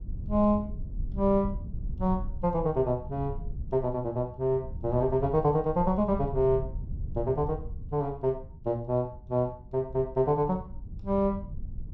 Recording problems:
low-frequency rumble; below 98 Hz, SNR 11 dB

